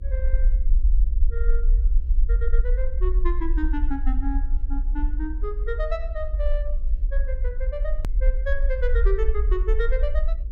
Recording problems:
hum; 50 Hz, harmonics up to 550 Hz, SNR 21 dB
rumble; below 46 Hz, SNR -7 dB
click at an edit; at 8 s

